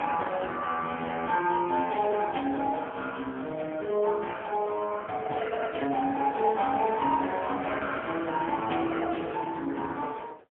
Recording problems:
phone line; 240 Hz to 3.2 kHz, AMR-NB, then MP3

